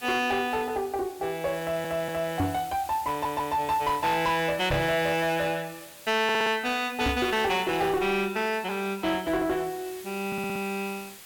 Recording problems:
distorted audio; soft clipping, signal-to-distortion ratio 10 dB
background hiss; slope 0 dB per octave, SNR 17 dB
stutter; 4 times, first at 1.5 s
microphone bump; at 2.5 s, at 4.5 s and at 7 s; peak +3 dB vs average level

